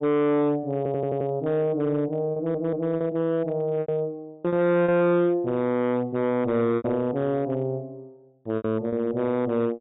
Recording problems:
low-pass filter; nothing above 4 kHz
distorted audio; hard clipping, signal-to-distortion ratio 10 dB
packet loss; 5% of the sound replaced, filled with repeated pitch periods
stutter; at 1 s and at 2.5 s

